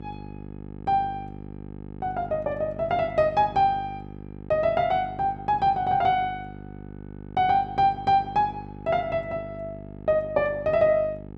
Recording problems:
hum; 50 Hz, harmonics up to 1.3 kHz, SNR 16 dB

